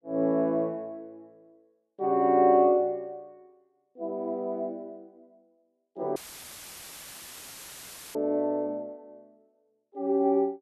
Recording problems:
dropout; at 6 s for 2 s; filled with static

